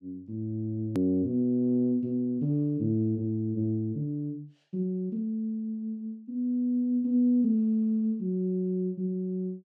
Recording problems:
click at an edit; at 1 s

